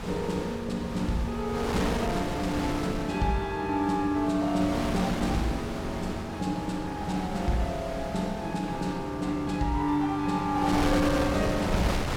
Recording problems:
wind noise; below 1.2 kHz, SNR 6 dB

